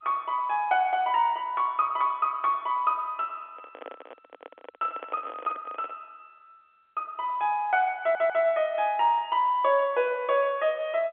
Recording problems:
telephone audio; 300 Hz to 3.5 kHz, G.711
handling noise; from 3.5 to 6 s; peak -9 dB vs average level
audio stuttering; at 8 s

